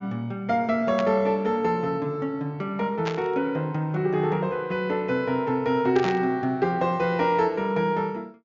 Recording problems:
low-pass filter; nothing above 7.2 kHz
burst of static; at 1 s, at 3 s and at 6 s; peak -3 dB vs average level

